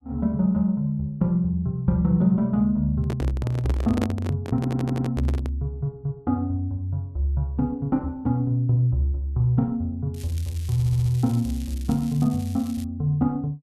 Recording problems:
handling noise; from 3 to 5.5 s; peak +1 dB vs average level
audio stuttering; at 4.5 s and at 11 s
crackle; from 10 to 13 s; loose cable, SNR 21 dB

